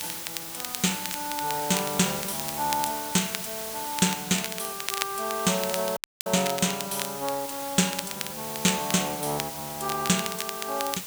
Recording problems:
background hiss; slope 0 dB per octave, SNR 6 dB
crackle; vinyl, SNR 8 dB
dropout; at 6 s

